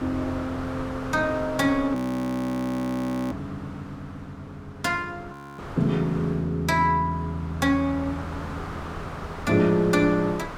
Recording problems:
wind on the microphone; below 1.4 kHz, SNR 13 dB
frozen audio; at 2 s for 1.5 s and at 5.5 s

